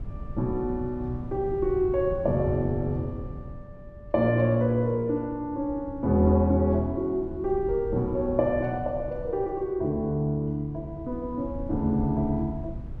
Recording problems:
wind noise; below 130 Hz, SNR 14 dB

